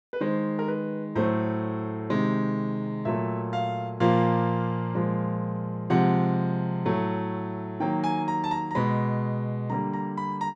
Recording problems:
none

